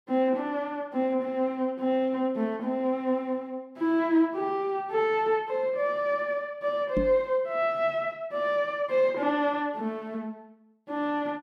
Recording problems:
knock on the microphone; at 7 s; peak +2 dB vs average level

